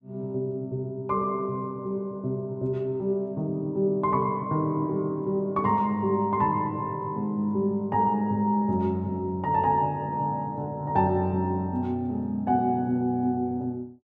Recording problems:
none

